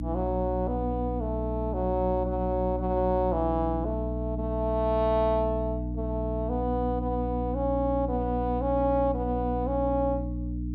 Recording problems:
electrical hum; 60 Hz, harmonics up to 300 Hz, SNR 4 dB

